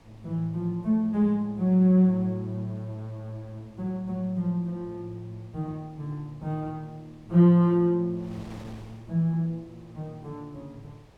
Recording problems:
wind on the microphone; below 760 Hz, SNR 27 dB

